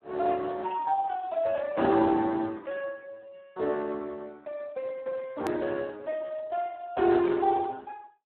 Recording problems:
telephone audio; 260 Hz to 2.8 kHz, Speex
edit click; at 5.5 s

